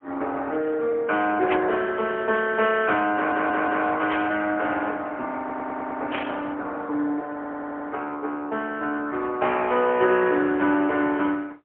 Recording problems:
telephone audio; 240 Hz to 3.3 kHz, AMR-NB, then MP3
burst of static; at 1.5 s, at 4 s and at 6 s; peak +1 dB vs average level
audio stuttering; at 3 s, at 5.5 s and at 7.5 s

